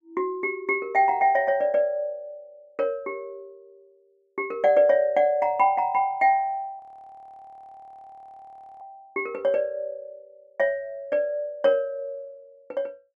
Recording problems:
audio freezing; at 7 s for 2 s

